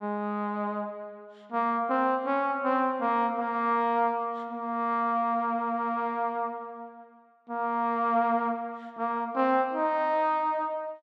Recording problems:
none

